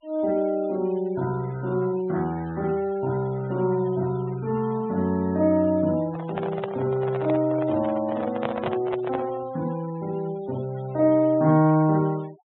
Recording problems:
treble cut off; nothing above 3.8 kHz
denoising artefacts; signal-to-artefact ratio 23 dB
microphone handling noise; from 6 to 9.5 s; peak 0 dB vs average level

